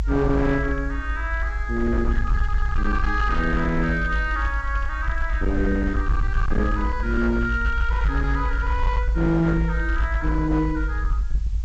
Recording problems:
treble missing; nothing above 8 kHz
distorted audio; hard clipping, signal-to-distortion ratio 12 dB
background hiss; slope 0 dB per octave, SNR 29 dB
low-frequency rumble; below 58 Hz, strongest tone 50 Hz, SNR 1 dB

